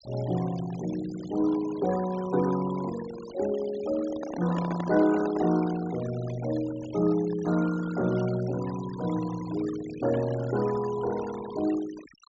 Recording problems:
low-pass filter; nothing above 7.5 kHz
denoising artefacts; signal-to-artefact ratio 15 dB
microphone handling noise; from 4 to 5.5 s; peak -2 dB vs average level

